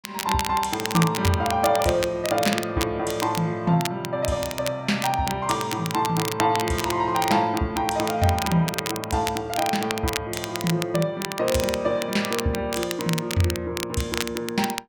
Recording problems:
crackle; vinyl, SNR 7 dB

